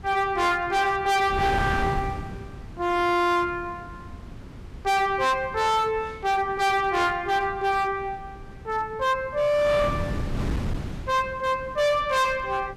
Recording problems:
distorted audio; hard clipping, signal-to-distortion ratio 7 dB
wind noise; below 300 Hz, SNR 12 dB

